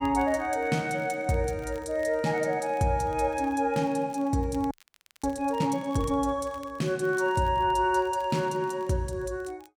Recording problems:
crackle; vinyl, SNR 29 dB
frozen audio; at 4.5 s for 0.5 s

